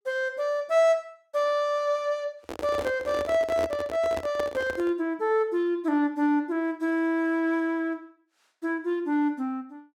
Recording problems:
handling noise; from 2.5 to 5 s; peak -2 dB vs average level

